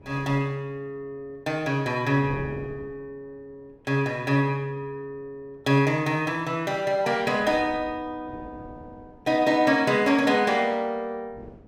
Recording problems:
wind noise; below 450 Hz, SNR 20 dB

